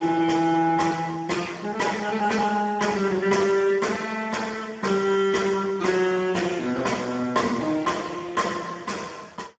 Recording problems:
codec artefacts; Speex, log-spectral distance 4 dB, nothing above 7.6 kHz

